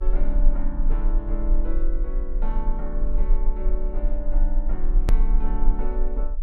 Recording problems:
electrical hum; 60 Hz, harmonics up to 540 Hz, SNR 25 dB
rumble; below 34 Hz, strongest tone 24 Hz, SNR -9 dB
click at an edit; at 5 s

